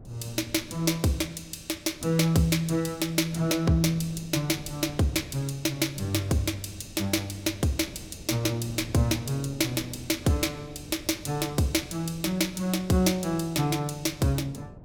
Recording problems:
wind on the microphone; below 290 Hz, SNR 19 dB

